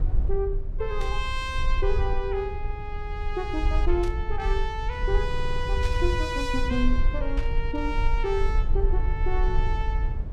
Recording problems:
rumble; below 54 Hz, strongest tone 24 Hz, SNR -1 dB
static burst; 4 times, first at 1 s; peak -6 dB vs average level
stutter; at 5.5 s

